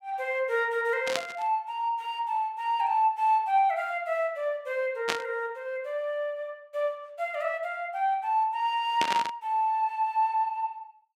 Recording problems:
burst of static; at 1 s, at 5 s and at 9 s; peak +4 dB vs average level

